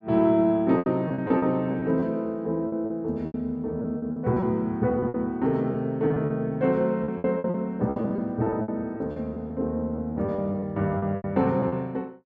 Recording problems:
packet loss; 13% of the sound replaced, filled with repeated pitch periods

